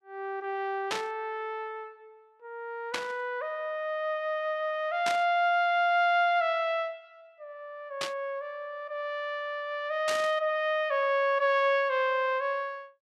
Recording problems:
static burst; 5 times, first at 1 s; peak +1 dB vs average level

